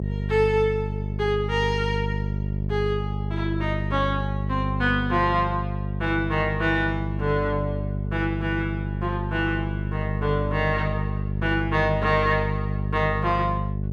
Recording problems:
hum; 50 Hz, harmonics up to 600 Hz, SNR 2 dB

